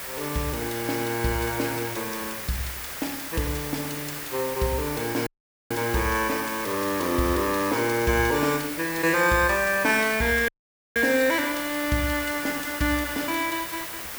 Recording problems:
hiss; SNR 7 dB
audio cutting out; at 5.5 s and at 10 s

